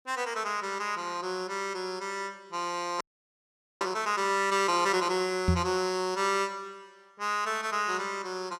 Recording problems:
audio freezing; at 3 s for 1 s
knock on the microphone; at 5.5 s; peak +8 dB vs average level

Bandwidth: 14.5 kHz